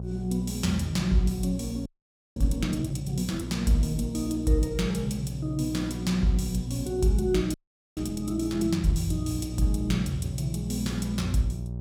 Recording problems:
hum; 60 Hz, harmonics up to 600 Hz, SNR 8 dB
audio freezing; at 2 s and at 7.5 s

